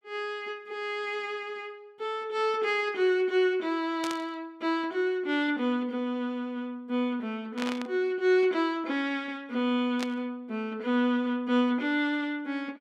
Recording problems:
static burst; at 4 s, at 7.5 s and at 10 s; peak -2 dB vs average level

